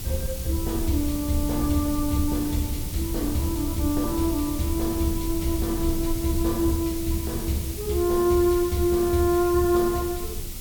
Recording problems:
background hiss; SNR 10 dB
low-frequency rumble; below 110 Hz, SNR 9 dB

